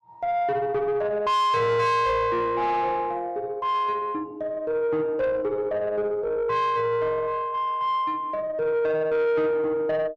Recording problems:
distorted audio; soft clipping, signal-to-distortion ratio 7 dB

